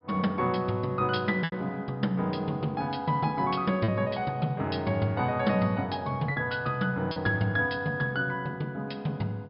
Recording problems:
low-pass filter; nothing above 5.5 kHz
lost packets; 2% of the sound replaced, filled with repeated pitch periods

